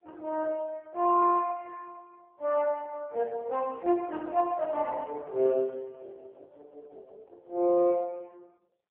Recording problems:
phone line; 320 Hz to 2.4 kHz, AMR-NB

